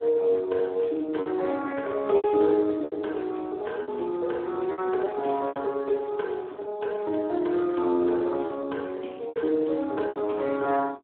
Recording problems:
telephone audio; 260 Hz to 3 kHz, Speex
packet loss; 7% of the sound replaced, filled with repeated pitch periods

